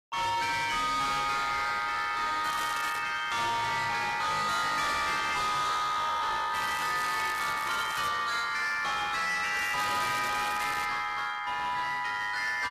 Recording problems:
codec artefacts; AAC, log-spectral distance 4 dB, nothing above 14.1 kHz
distorted audio; hard clipping, signal-to-distortion ratio 7 dB
crackling; at 2.5 s, from 6.5 to 8 s and from 9.5 to 11 s; loose cable, SNR 10 dB

